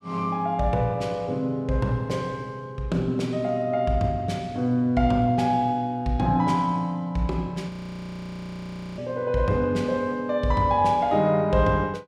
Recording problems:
frozen audio; at 7.5 s for 1.5 s

